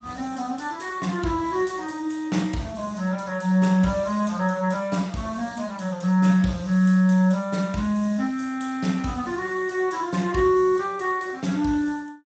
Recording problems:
codec artefacts; Speex, log-spectral distance 4 dB, nothing above 7.8 kHz

